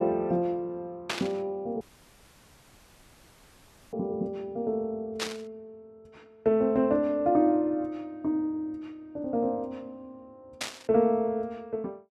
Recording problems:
burst of static; at 1 s, at 5 s and at 11 s; peak +3 dB vs average level
audio cutting out; at 2 s for 2 s

